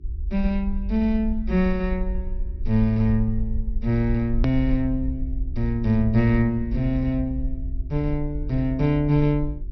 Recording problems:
low-pass filter; nothing above 5.8 kHz
hum; 50 Hz, harmonics up to 400 Hz, SNR 27 dB
low-frequency rumble; below 58 Hz, SNR 7 dB
click at an edit; at 4.5 s

